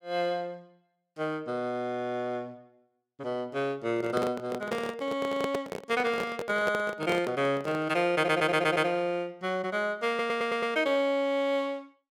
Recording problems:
microphone handling noise; from 4 to 8 s; peak +1 dB vs average level
stutter; at 8 s and at 10 s

